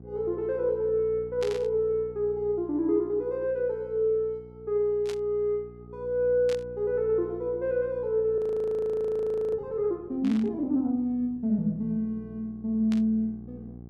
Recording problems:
mains hum; 60 Hz, harmonics up to 780 Hz, SNR 19 dB
burst of static; 5 times, first at 1.5 s; peak -8 dB vs average level
audio freezing; at 8.5 s for 1 s

